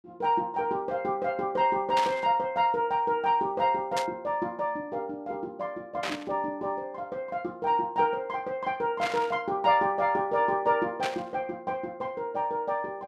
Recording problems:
burst of static; 5 times, first at 2 s; peak 0 dB vs average level

